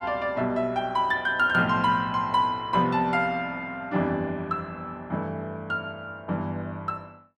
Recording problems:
none

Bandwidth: 14 kHz